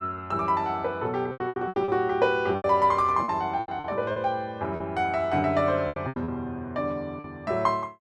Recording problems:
lost packets; 11% of the sound replaced, filled with repeated pitch periods

